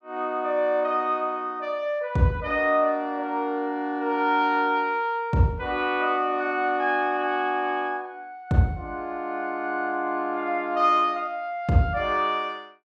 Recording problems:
none

